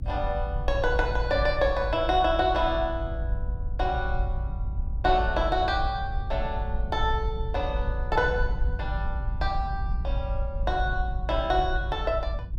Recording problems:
rumble; below 64 Hz, SNR 4 dB

